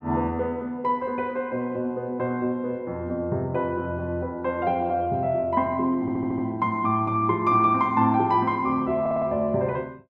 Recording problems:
stutter; at 6 s and at 9 s

